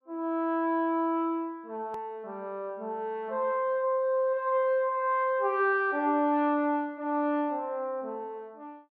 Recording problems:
edit click; at 2 s

